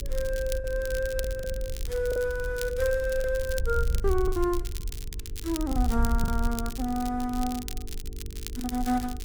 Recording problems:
hum; 50 Hz, harmonics up to 450 Hz, SNR 19 dB
wind noise; below 60 Hz, SNR 5 dB
crackling; vinyl, SNR 12 dB
packet loss; 8% of the sound replaced, filled with the last packet

